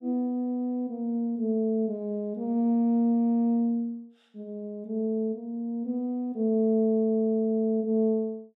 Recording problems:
none

